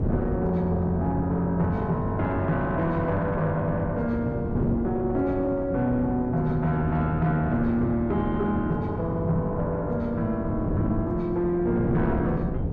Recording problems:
distortion; soft clipping, signal-to-distortion ratio 11 dB
wind noise; below 300 Hz, SNR 6 dB

